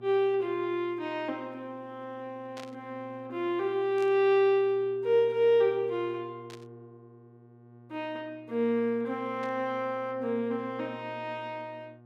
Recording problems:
hum; 60 Hz, harmonics up to 1.2 kHz, SNR 23 dB
burst of static; 4 times, first at 2.5 s; peak -13 dB vs average level

